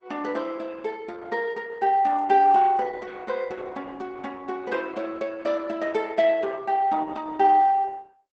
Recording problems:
lossy codec; Opus, log-spectral distance 3 dB, nothing above 8 kHz

